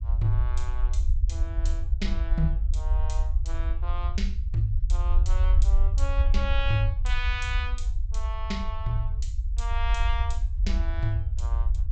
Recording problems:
low-pass filter; nothing above 8 kHz
low-frequency rumble; below 62 Hz, SNR -6 dB

